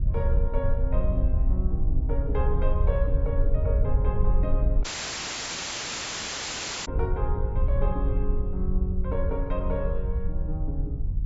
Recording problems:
treble cut off; nothing above 7.5 kHz
rumble; below 120 Hz, SNR 9 dB
wind on the microphone; below 66 Hz, SNR -6 dB
dropout; at 5 s for 2 s

